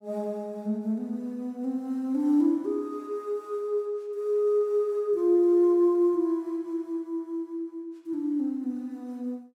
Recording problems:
none

